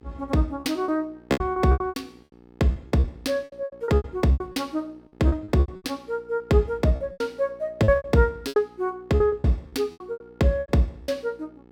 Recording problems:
hum; 60 Hz, harmonics up to 1.7 kHz, SNR 27 dB
packet loss; 19% of the sound replaced, filled with repeated pitch periods

